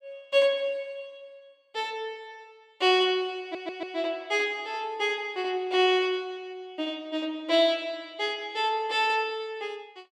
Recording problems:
audio stuttering; at 3.5 s

